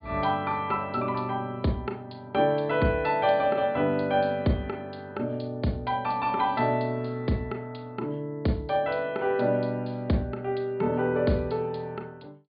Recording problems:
treble cut off; nothing above 4.7 kHz

